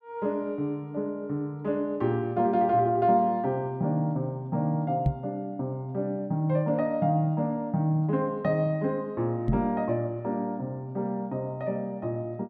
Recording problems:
microphone thump; at 5 s and at 9.5 s; peak +6 dB vs average level

